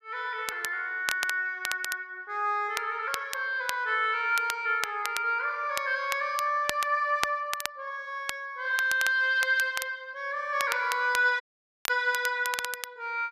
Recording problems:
crackling; vinyl, SNR 9 dB
audio cutting out; at 11 s

